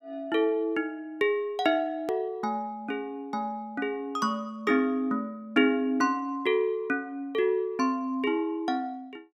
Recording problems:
edit click; at 2 s

